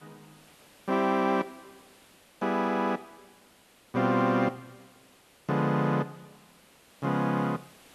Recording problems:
background hiss; slope -3 dB per octave, SNR 28 dB

